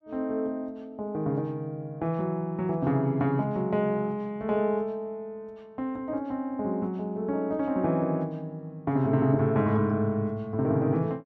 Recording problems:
none

